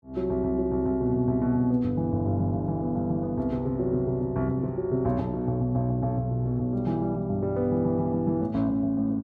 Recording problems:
none

